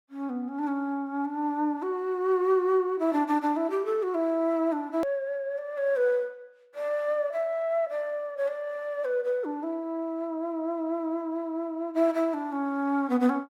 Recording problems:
edit click; at 5 s

